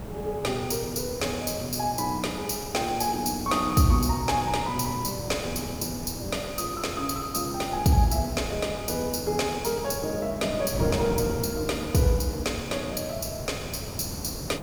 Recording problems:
background hiss; SNR 19 dB
wind on the microphone; below 390 Hz, SNR 10 dB

